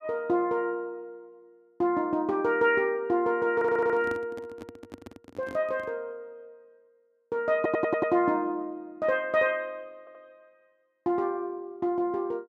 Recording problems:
stutter; at 3.5 s, at 7.5 s and at 10 s
microphone handling noise; from 3.5 to 6 s; peak -7 dB vs average level

